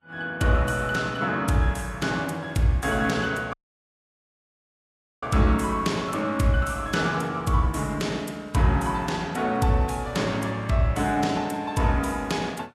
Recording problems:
lossy compression; Vorbis, log-spectral distance 3 dB, nothing above 13.8 kHz
dropout; at 3.5 s for 1.5 s

